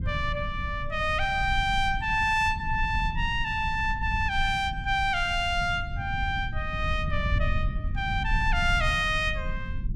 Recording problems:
low-frequency rumble; below 94 Hz, SNR 7 dB

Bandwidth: 15.5 kHz